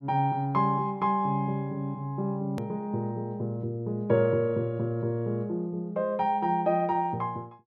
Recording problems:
click at an edit; at 2.5 s

